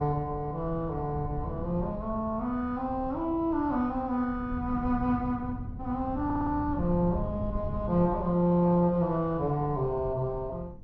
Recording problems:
lossy codec; MP2, log-spectral distance 2 dB, nothing above 5.5 kHz
wind noise; below 150 Hz, SNR 10 dB
stutter; at 6.5 s

